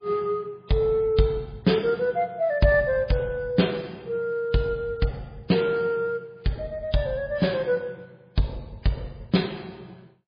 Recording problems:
lossy codec; MP3, log-spectral distance 2 dB, nothing above 4.2 kHz

